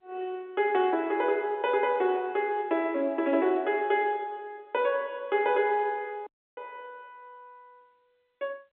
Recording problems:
phone line; 240 Hz to 3.8 kHz, G.711
dropout; at 6.5 s

